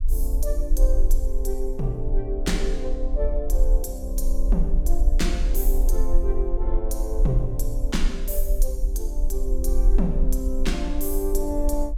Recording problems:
low-frequency rumble; below 40 Hz, strongest tone 22 Hz, SNR -4 dB

